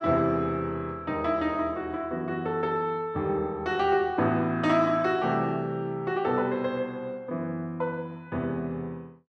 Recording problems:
none

